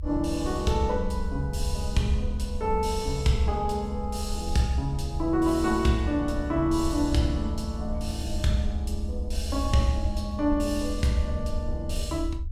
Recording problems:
low-frequency rumble; below 74 Hz, SNR 6 dB

